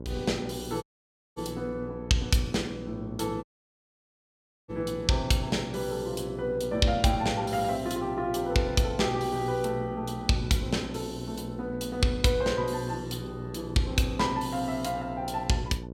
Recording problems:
hum; 60 Hz, harmonics up to 1 kHz, SNR 11 dB
dropout; at 1 s for 0.5 s and at 3.5 s for 1 s

